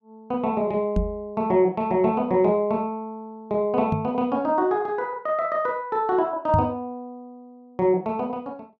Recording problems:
knock on the microphone; at 1 s, at 4 s and at 6.5 s; peak +4 dB vs average level

